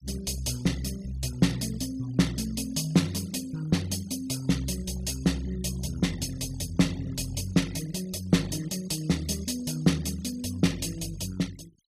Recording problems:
denoising artefacts; signal-to-artefact ratio 20 dB

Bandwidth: 15 kHz